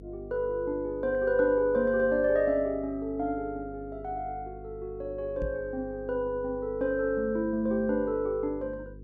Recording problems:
electrical hum; 50 Hz, harmonics up to 500 Hz, SNR 17 dB
microphone thump; at 5.5 s; peak -3 dB vs average level

